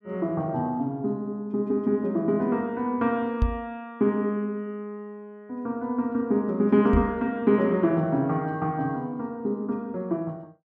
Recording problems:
knock on the microphone; at 3.5 s and at 7 s; peak +6 dB vs average level

